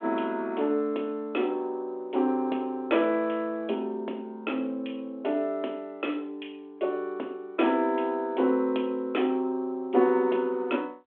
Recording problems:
telephone audio; 220 Hz to 3.5 kHz, G.726

